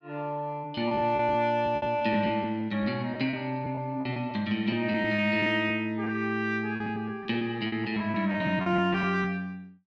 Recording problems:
packet loss; 11% of the sound replaced, filled with repeated pitch periods

